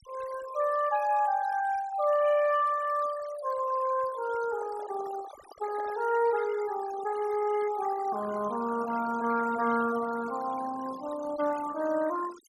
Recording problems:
denoising artefacts; signal-to-artefact ratio 16 dB
microphone handling noise; from 4.5 to 6 s; peak -13 dB vs average level

